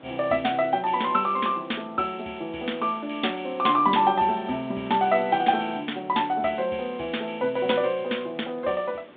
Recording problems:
telephone audio; 190 Hz to 3.7 kHz, G.726
background hiss; SNR 25 dB

